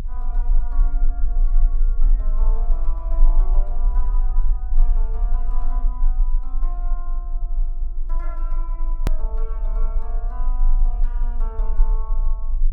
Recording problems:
hum; 50 Hz, harmonics up to 400 Hz, SNR 18 dB
low-frequency rumble; below 32 Hz, strongest tone 24 Hz, SNR -18 dB
edit click; at 9 s

